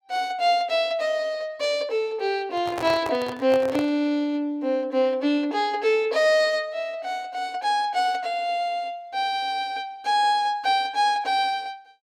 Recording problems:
handling noise; from 2.5 to 4 s; peak -4 dB vs average level

